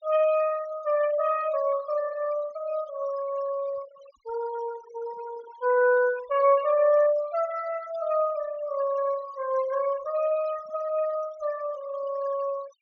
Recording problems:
treble cut off; nothing above 6.8 kHz
noise reduction artefacts; signal-to-artefact ratio 18 dB

